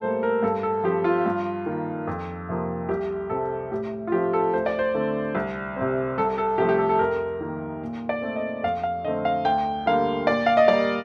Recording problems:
none

